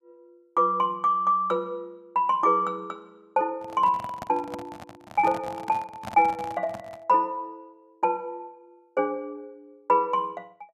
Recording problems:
handling noise; from 3.5 to 7 s; peak -6 dB vs average level

